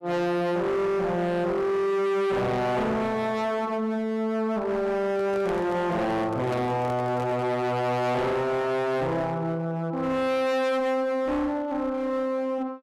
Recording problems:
distorted audio; hard clipping, signal-to-distortion ratio 7 dB
handling noise; from 5 to 7.5 s; peak -7 dB vs average level

